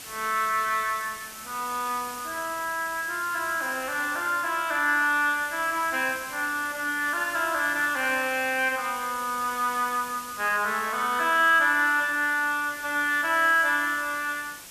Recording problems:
hiss; slope 0 dB per octave, SNR 14 dB

